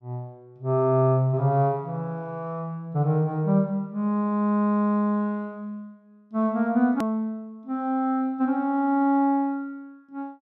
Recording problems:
edit click; at 7 s

